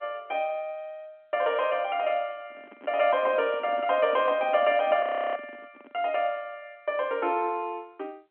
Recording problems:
phone line; 220 Hz to 3.3 kHz, G.711
microphone handling noise; from 2.5 to 6 s; peak -12 dB vs average level
audio freezing; at 5 s

